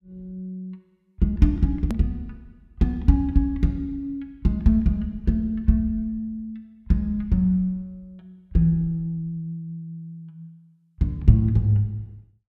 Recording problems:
click at an edit; at 2 s

